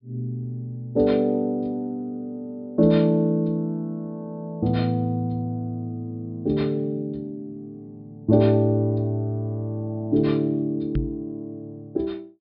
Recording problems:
low-pass filter; nothing above 5.5 kHz
knock on the microphone; at 11 s; peak +2 dB vs average level

